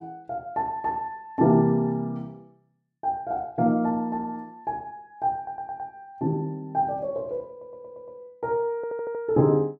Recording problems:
audio stuttering; at 5.5 s, at 7.5 s and at 9 s

